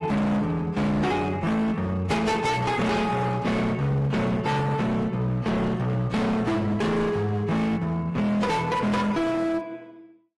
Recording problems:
codec artefacts; AAC, then AAC, log-spectral distance 2 dB, nothing above 11.3 kHz
distorted audio; hard clipping, uneven, signal-to-distortion ratio 6 dB

